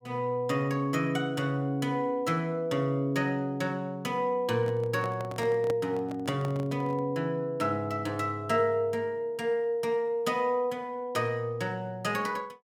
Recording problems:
microphone handling noise; from 4.5 to 7 s; peak -3 dB vs average level

